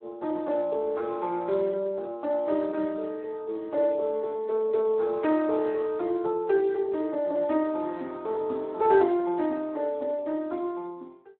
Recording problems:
telephone audio; 240 Hz to 3.2 kHz, Speex

